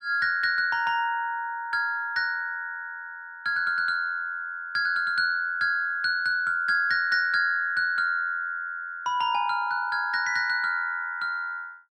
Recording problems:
none

